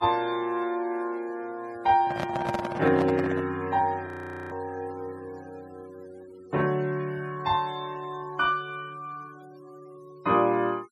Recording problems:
noise reduction artefacts; signal-to-artefact ratio 24 dB
microphone handling noise; from 2 to 3.5 s; peak +1 dB vs average level
frozen audio; at 4 s

